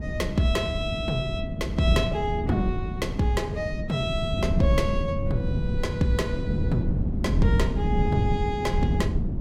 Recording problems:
hum; 50 Hz, harmonics up to 400 Hz, SNR 16 dB
wind on the microphone; below 190 Hz, SNR 0 dB

